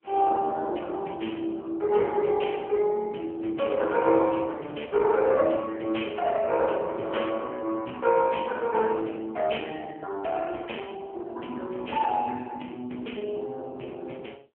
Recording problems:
phone line; 240 Hz to 3.3 kHz, AMR-NB

